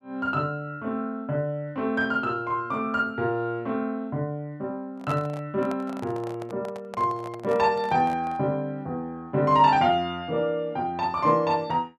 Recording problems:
handling noise; from 5 to 8.5 s; peak -5 dB vs average level

